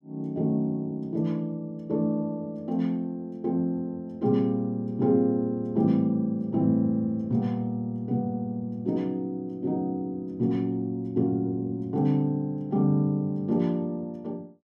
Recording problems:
none

